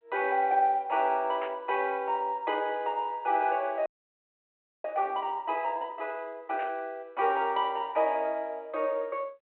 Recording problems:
phone line; 340 Hz to 3.3 kHz, G.726
burst of static; at 1.5 s and at 6.5 s; peak -7 dB vs average level
frozen audio; at 4 s for 1 s

